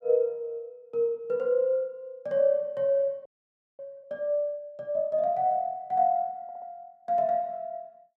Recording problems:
frozen audio; at 3.5 s for 0.5 s
audio stuttering; at 6.5 s

